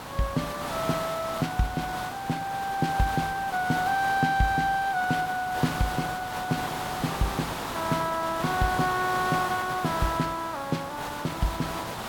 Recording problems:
background hiss; SNR 6 dB

